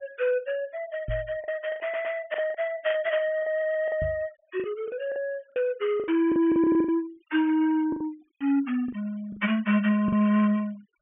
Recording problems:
treble missing; nothing above 3.3 kHz
noise reduction artefacts; signal-to-artefact ratio 25 dB
packet loss; 10% of the sound replaced, filled with the last packet
microphone bump; at 1 s and at 4 s; peak -3 dB vs average level
stutter; at 2 s, at 3.5 s and at 6.5 s

